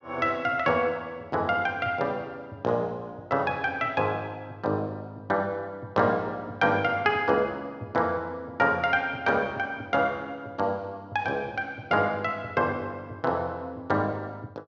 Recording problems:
none

